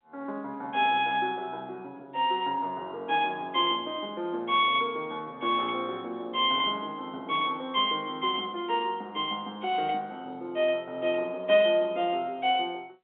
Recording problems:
telephone audio; 260 Hz to 3.5 kHz, G.711

